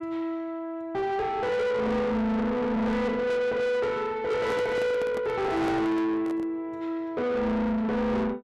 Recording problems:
distorted audio; soft clipping, signal-to-distortion ratio 8 dB
microphone handling noise; from 4.5 to 6.5 s; peak -1 dB vs average level

